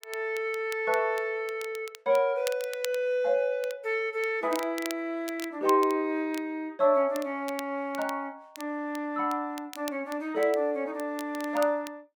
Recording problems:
crackle; vinyl, SNR 17 dB

